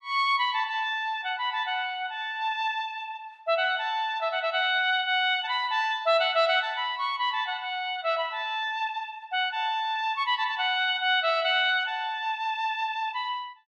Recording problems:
none

